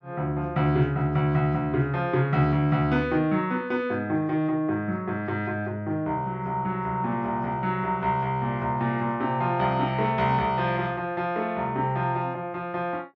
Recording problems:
none

